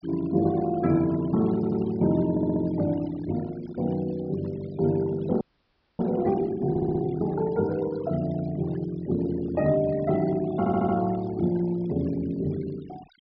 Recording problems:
treble cut off; nothing above 5.5 kHz
noise reduction artefacts; signal-to-artefact ratio 20 dB
audio stuttering; 4 times, first at 1.5 s
frozen audio; at 5.5 s for 0.5 s

